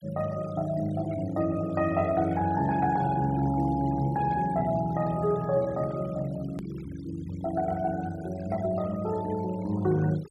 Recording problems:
noise reduction artefacts; signal-to-artefact ratio 19 dB
hard cut with a click; at 6.5 s

